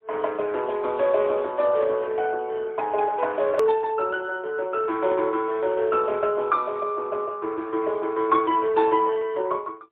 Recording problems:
phone line; 280 Hz to 3.6 kHz, AMR-NB, then MP3
click at an edit; at 3.5 s

